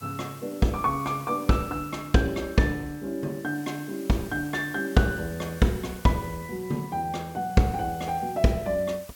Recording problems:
background hiss; slope +1 dB per octave, SNR 20 dB

